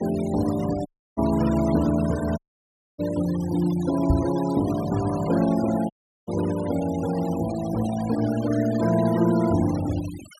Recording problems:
noise reduction artefacts; signal-to-artefact ratio 16 dB
audio cutting out; at 1 s, at 2.5 s for 0.5 s and at 6 s
microphone thump; at 4 s; peak +6 dB vs average level

